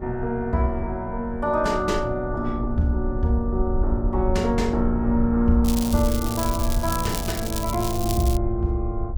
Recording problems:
rumble; below 70 Hz, SNR 6 dB
wind on the microphone; below 380 Hz, SNR 20 dB
crackling; from 5.5 to 8.5 s; loose cable, SNR 8 dB

